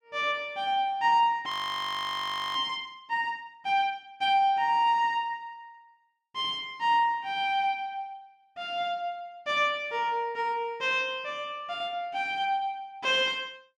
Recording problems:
frozen audio; at 1.5 s for 1 s

